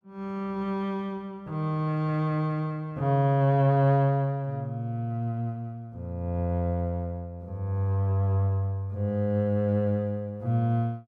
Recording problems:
none

